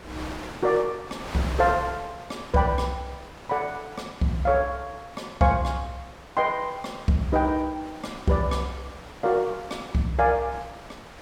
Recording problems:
wind noise; below 2 kHz, SNR 16 dB

